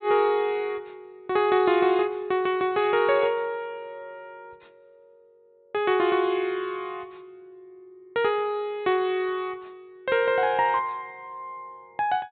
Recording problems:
treble cut off; nothing above 4 kHz

